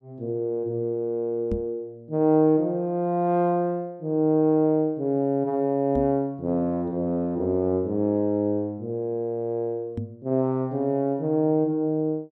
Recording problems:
knock on the microphone; at 1.5 s, at 6 s and at 10 s; peak -1 dB vs average level

